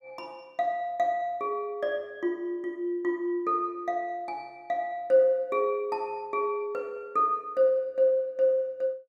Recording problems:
none

